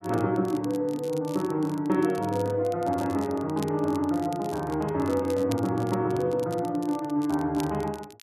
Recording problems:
crackling; vinyl, SNR 20 dB

